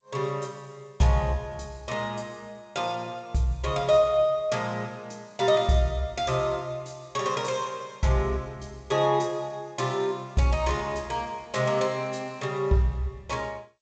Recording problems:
lossy compression; G.722, log-spectral distance 3 dB, nothing above 7.6 kHz

